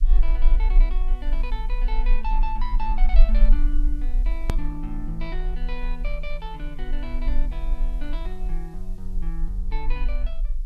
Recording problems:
hiss; slope +3 dB per octave, SNR 27 dB
low-frequency rumble; below 36 Hz, strongest tone 20 Hz, SNR -10 dB
hard cut with a click; at 4.5 s

